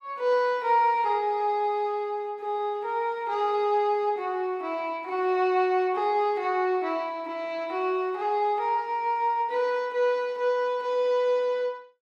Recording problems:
none

